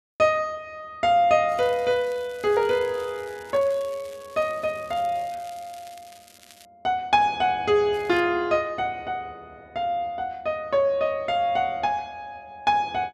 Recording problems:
crackle; from 1.5 to 6.5 s and at 8 s; loose cable, SNR 25 dB

